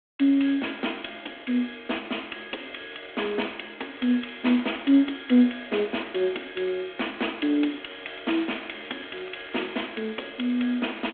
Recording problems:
telephone audio; 220 Hz to 3.5 kHz, G.726
crackle; at 4 s and from 8 to 10 s; loose cable, SNR 22 dB

